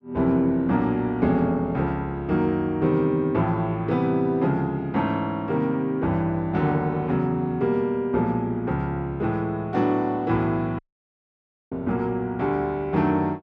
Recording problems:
dropout; at 11 s for 1 s

